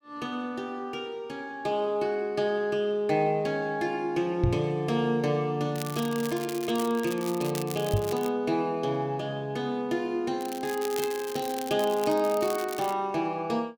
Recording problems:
microphone thump; at 4.5 s and at 8 s; peak +7 dB vs average level
crackle; from 5.5 to 8.5 s and from 10 to 13 s; loose cable, SNR 12 dB

